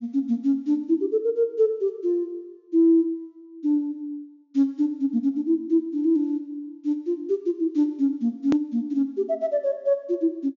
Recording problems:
low-pass filter; nothing above 7 kHz
hard cut with a click; at 8.5 s

